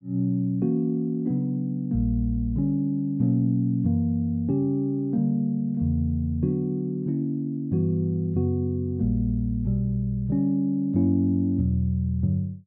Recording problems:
none

